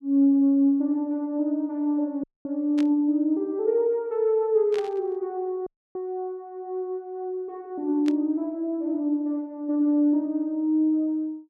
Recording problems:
dropout; at 2 s and at 5.5 s
static burst; at 3 s, at 4.5 s and at 8 s; peak -10 dB vs average level

